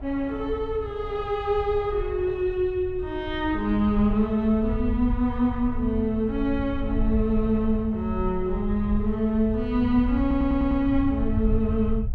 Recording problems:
low-frequency rumble; below 80 Hz, SNR 8 dB
wind noise; below 870 Hz, SNR 26 dB
audio stuttering; at 10 s

